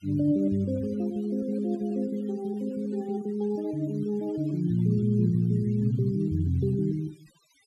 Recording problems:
noise reduction artefacts; signal-to-artefact ratio 27 dB

